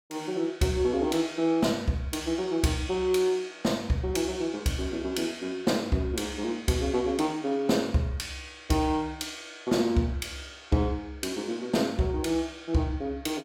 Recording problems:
none

